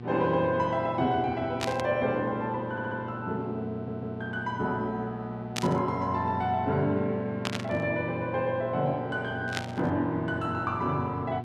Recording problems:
electrical hum; 60 Hz, harmonics up to 1.2 kHz, SNR 10 dB
static burst; 4 times, first at 1.5 s; peak +3 dB vs average level
audio stuttering; at 2.5 s and at 3.5 s

